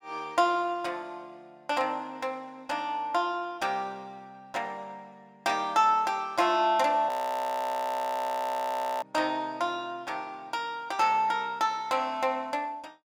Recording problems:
audio freezing; at 7 s for 2 s

